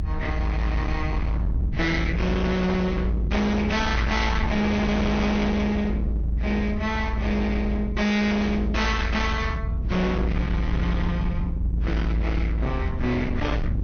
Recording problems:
codec artefacts; MP2, then Vorbis, log-spectral distance 2 dB, nothing above 6.3 kHz
distortion; hard clipping, uneven, signal-to-distortion ratio 6 dB
low-frequency rumble; below 170 Hz, strongest tone 56 Hz, SNR 2 dB
burst of static; at 4 s and at 8.5 s; peak -8 dB vs average level

